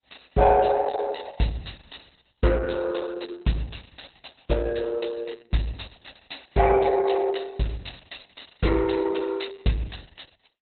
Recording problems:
codec artefacts; Opus, log-spectral distance 10 dB, nothing above 4.1 kHz

